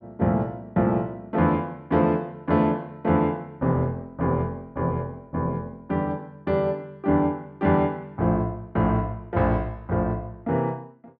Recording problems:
none

